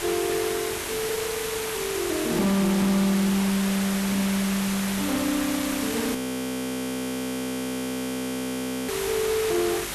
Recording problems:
distortion; soft clipping, signal-to-distortion ratio 5 dB
mains hum; 50 Hz, harmonics up to 450 Hz, SNR 23 dB
hiss; SNR 3 dB
frozen audio; at 6 s for 2.5 s

